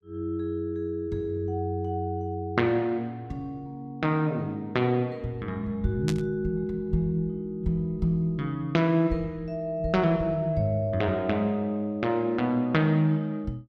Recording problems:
burst of static; at 6 s; peak -3 dB vs average level

